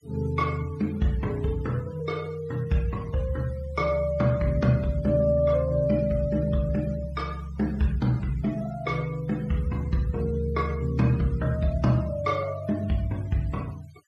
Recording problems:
denoising artefacts; signal-to-artefact ratio 24 dB

